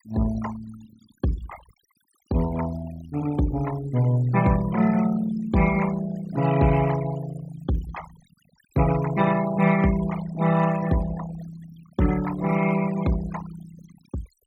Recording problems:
noise reduction artefacts; signal-to-artefact ratio 15 dB

